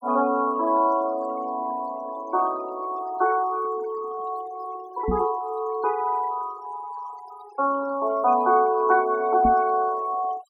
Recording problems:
noise reduction artefacts; signal-to-artefact ratio 19 dB
microphone thump; at 5 s and at 9.5 s; peak +1 dB vs average level

